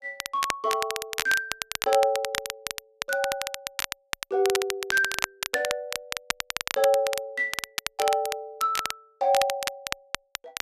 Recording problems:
crackling; vinyl, SNR 5 dB

